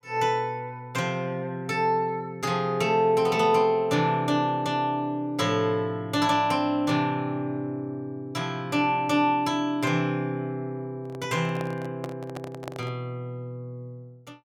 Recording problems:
handling noise; from 11 to 13 s; peak -6 dB vs average level

